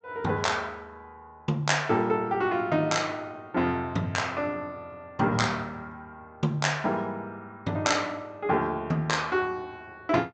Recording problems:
treble cut off; nothing above 8 kHz

